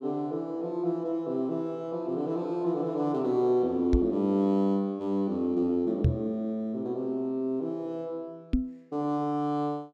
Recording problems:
microphone thump; at 4 s, at 6 s and at 8.5 s; peak +8 dB vs average level

